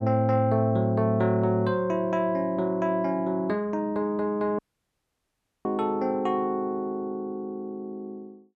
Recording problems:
dropout; at 4.5 s for 1 s

